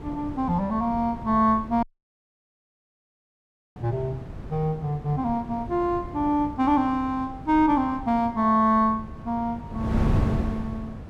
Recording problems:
wind noise; below 230 Hz, SNR 9 dB
audio cutting out; at 2 s for 2 s

